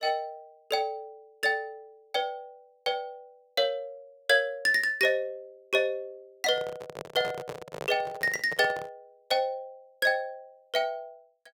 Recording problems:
microphone handling noise; from 6.5 to 9 s; peak -4 dB vs average level

